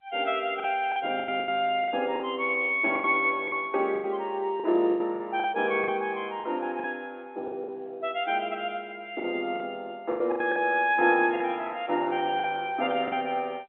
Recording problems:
telephone audio; 280 Hz to 3.3 kHz, G.711
lost packets; 10% of the sound replaced, filled with the last packet

